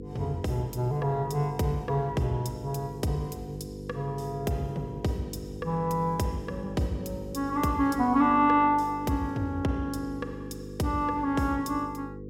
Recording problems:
hum; 50 Hz, harmonics up to 500 Hz, SNR 11 dB

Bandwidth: 16.5 kHz